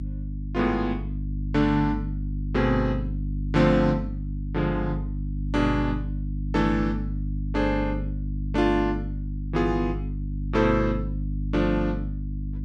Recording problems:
hum; 50 Hz, harmonics up to 300 Hz, SNR 5 dB

